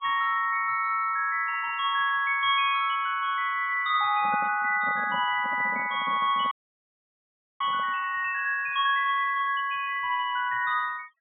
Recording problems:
low-pass filter; nothing above 3.8 kHz
denoising artefacts; signal-to-artefact ratio 22 dB
microphone handling noise; from 4 to 8 s; peak -9 dB vs average level
frozen audio; at 6.5 s for 1 s

